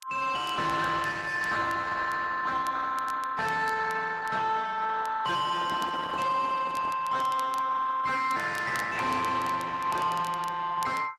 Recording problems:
lossy codec; AAC, then Opus, log-spectral distance 4 dB, nothing above 12 kHz
distorted audio; soft clipping, signal-to-distortion ratio 5 dB
crackling; vinyl, SNR 22 dB
handling noise; from 5.5 to 7 s; peak -6 dB vs average level

